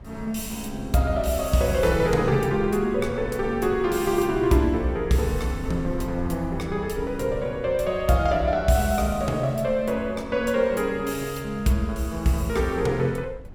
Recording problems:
wind noise; below 120 Hz, SNR 15 dB

